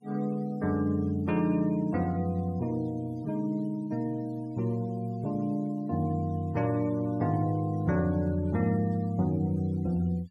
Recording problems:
noise reduction artefacts; signal-to-artefact ratio 26 dB

